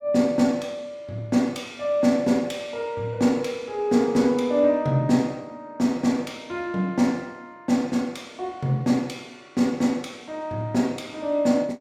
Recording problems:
none

